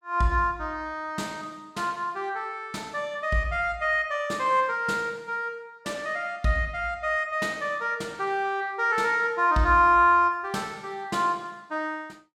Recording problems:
none

